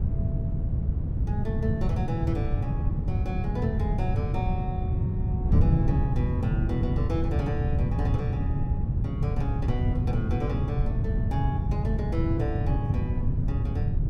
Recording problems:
wind on the microphone; below 140 Hz, SNR -7 dB

